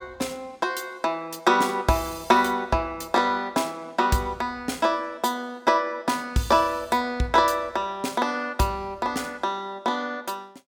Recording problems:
none

